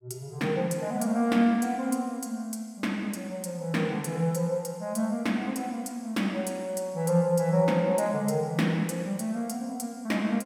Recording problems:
none

